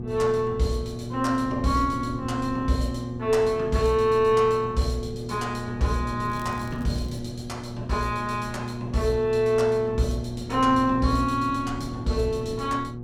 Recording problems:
hum; 60 Hz, harmonics up to 840 Hz, SNR 9 dB
wind on the microphone; below 240 Hz, SNR 15 dB
crackling; at 6 s; loose cable, SNR 28 dB

